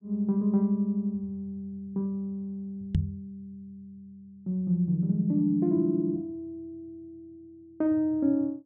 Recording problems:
knock on the microphone; at 3 s; peak +6 dB vs average level

